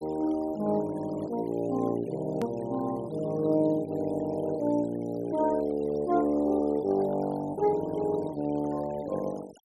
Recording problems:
noise reduction artefacts; signal-to-artefact ratio 24 dB
click at an edit; at 2.5 s

